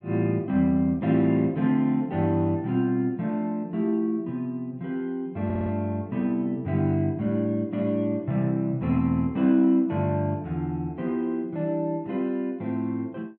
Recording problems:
audio stuttering; at 5.5 s

